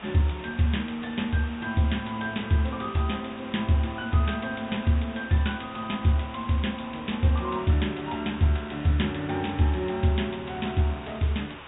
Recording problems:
treble cut off; nothing above 4 kHz
mains hum; 60 Hz, harmonics up to 720 Hz, SNR 29 dB
hiss; SNR 15 dB

